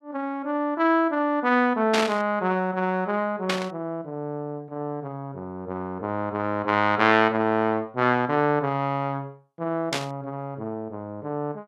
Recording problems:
static burst; at 2 s, at 3.5 s and at 10 s; peak +4 dB vs average level

